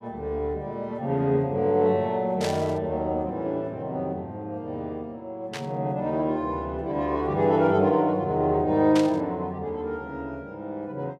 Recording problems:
static burst; at 2.5 s, at 5.5 s and at 9 s; peak -2 dB vs average level

